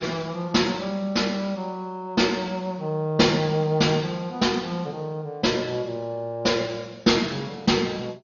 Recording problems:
lossy codec; MP2, log-spectral distance 2 dB, nothing above 6.7 kHz

